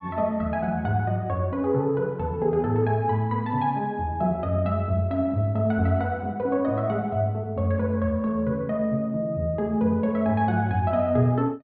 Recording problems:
treble missing; nothing above 4.6 kHz

